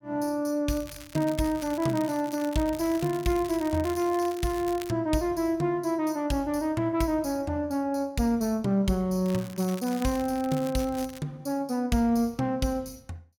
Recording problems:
crackle; from 0.5 to 5 s and from 9.5 to 11 s; loose cable, SNR 17 dB

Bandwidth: 17.5 kHz